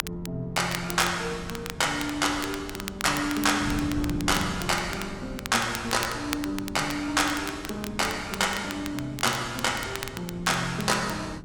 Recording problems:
wind noise; below 220 Hz, SNR 14 dB
crackling; vinyl, SNR 11 dB

